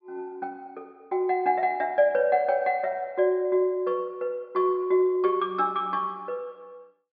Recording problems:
treble missing; nothing above 5.5 kHz

